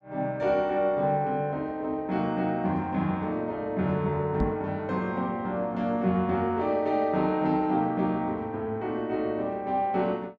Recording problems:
microphone thump; at 4.5 s; peak +3 dB vs average level

